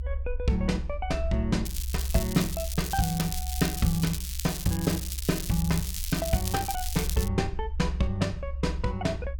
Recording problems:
low-frequency rumble; below 68 Hz, strongest tone 66 Hz, SNR 6 dB
crackle; from 1.5 to 7.5 s; loose cable, SNR 6 dB

